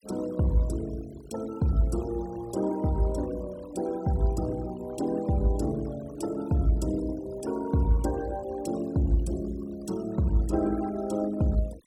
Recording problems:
noise reduction artefacts; signal-to-artefact ratio 20 dB

